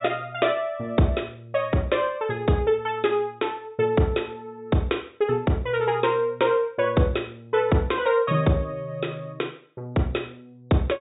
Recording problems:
treble missing; nothing above 4 kHz

